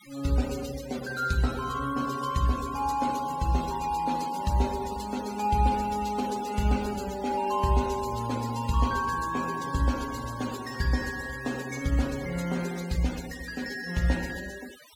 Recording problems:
denoising artefacts; signal-to-artefact ratio 15 dB

